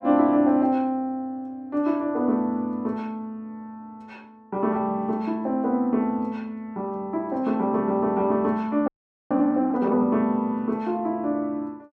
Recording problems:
frozen audio; at 9 s

